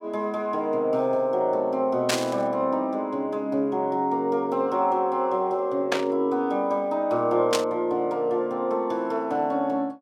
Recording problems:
burst of static; at 2 s, at 6 s and at 7.5 s; peak +4 dB vs average level

